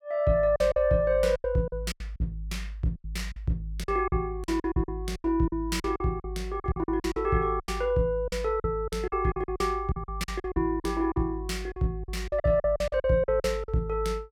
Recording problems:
lost packets; 15% of the sound replaced, filled with silence

